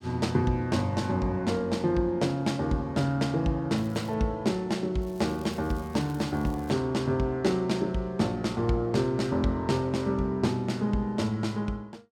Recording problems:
crackling; at 4 s and from 5 to 6.5 s; loose cable, SNR 26 dB

